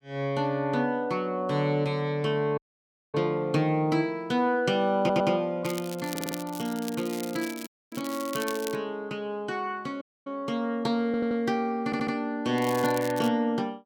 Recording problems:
dropout; at 2.5 s for 0.5 s, at 7.5 s and at 10 s
stutter; 4 times, first at 5 s
crackle; from 5.5 to 9 s and at 13 s; loose cable, SNR 12 dB

